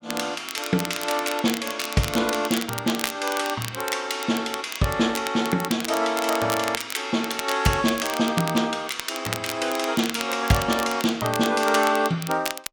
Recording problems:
crackling; vinyl, SNR 9 dB

